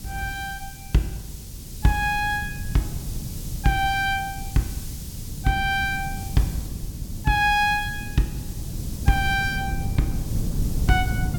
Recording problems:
background hiss; SNR 15 dB
wind noise; below 150 Hz, SNR 8 dB

